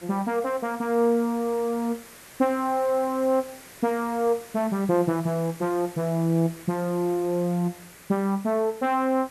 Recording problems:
hiss; SNR 20 dB

